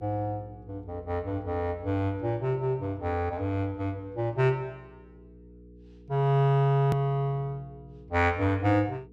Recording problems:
mains hum; 60 Hz, harmonics up to 480 Hz, SNR 23 dB
click at an edit; at 7 s

